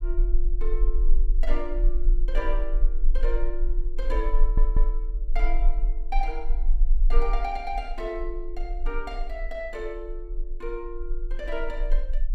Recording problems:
rumble; below 34 Hz, strongest tone 20 Hz, SNR -6 dB
stutter; at 4.5 s

